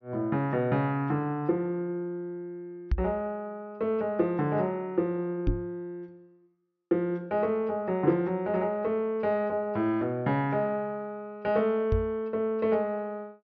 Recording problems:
low-pass filter; nothing above 6 kHz
microphone bump; at 3 s, at 5.5 s and at 12 s; peak +5 dB vs average level

